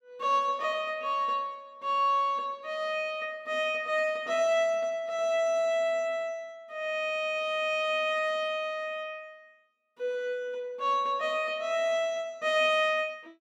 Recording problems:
none

